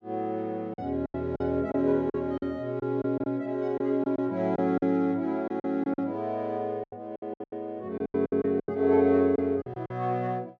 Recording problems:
packet loss; 12% of the sound replaced, filled with silence

